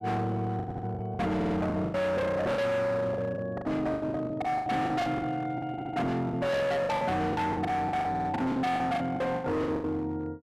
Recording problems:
distortion; hard clipping, signal-to-distortion ratio 7 dB
lost packets; 17% of the sound replaced, filled with the last packet
audio stuttering; 4 times, first at 0.5 s

